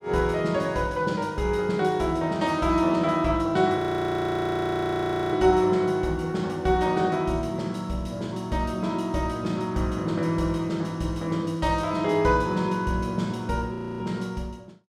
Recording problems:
frozen audio; at 4 s for 1.5 s and at 14 s

